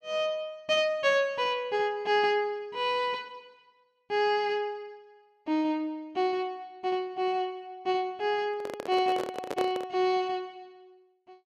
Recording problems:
handling noise; from 8.5 to 10 s; peak -1 dB vs average level

